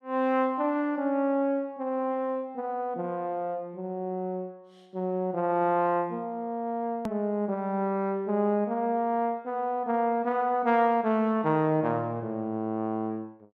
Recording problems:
click at an edit; at 7 s

